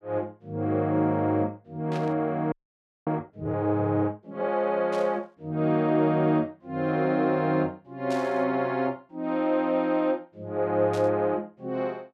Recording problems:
burst of static; 4 times, first at 2 s; peak -10 dB vs average level
audio freezing; at 2.5 s for 0.5 s

